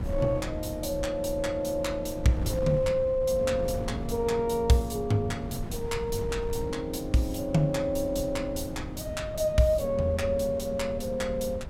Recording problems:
wind on the microphone; below 180 Hz, SNR 10 dB

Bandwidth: 16 kHz